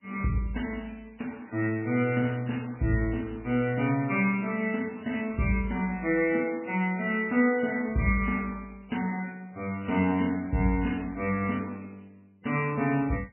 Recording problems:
lossy compression; MP3, log-spectral distance 6 dB

